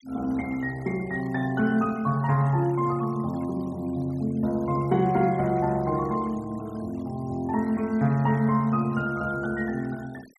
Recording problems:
noise reduction artefacts; signal-to-artefact ratio 25 dB

